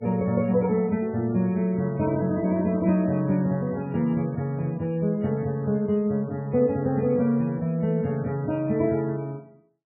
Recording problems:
lossy codec; MP3, log-spectral distance 2 dB, nothing above 2.4 kHz

